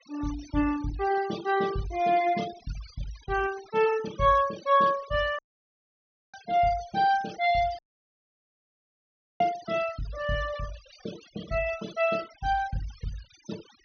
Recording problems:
low-pass filter; nothing above 6.3 kHz
noise reduction artefacts; signal-to-artefact ratio 17 dB
audio cutting out; at 5.5 s for 1 s and at 8 s for 1.5 s

